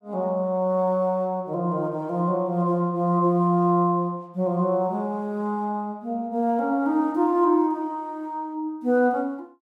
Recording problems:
none

